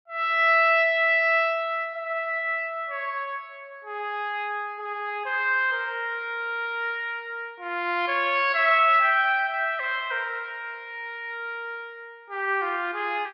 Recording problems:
treble missing; nothing above 5.5 kHz

